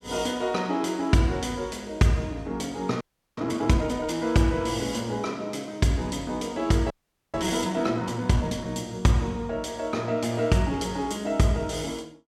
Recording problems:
audio freezing; at 3 s and at 7 s

